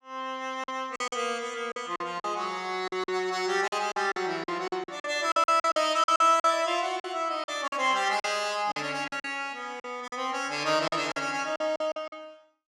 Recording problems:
lost packets; 12% of the sound replaced, filled with silence

